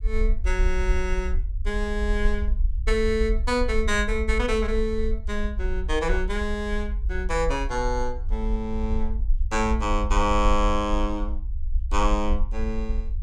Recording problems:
low-frequency rumble; below 52 Hz, SNR 2 dB

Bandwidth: 17 kHz